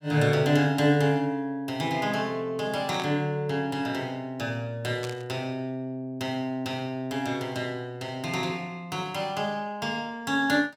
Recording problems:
burst of static; at 3 s and at 5 s; peak -5 dB vs average level

